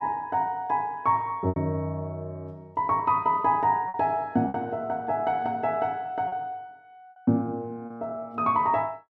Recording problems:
packet loss; 3% of the sound replaced, filled with repeated pitch periods

